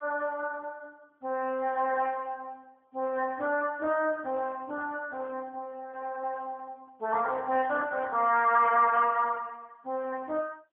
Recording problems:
phone line; 320 Hz to 3.4 kHz, AMR-NB

